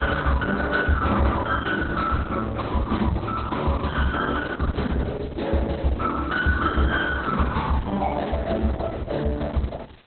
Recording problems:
codec artefacts; Opus, log-spectral distance 6 dB
background hiss; SNR 27 dB

